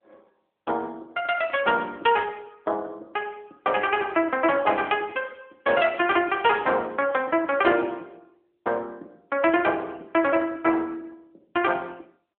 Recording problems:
telephone audio; 220 Hz to 3.3 kHz, AMR-NB

